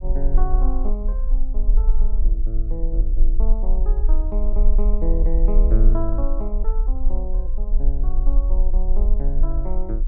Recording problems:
low-frequency rumble; below 38 Hz, strongest tone 22 Hz, SNR -10 dB

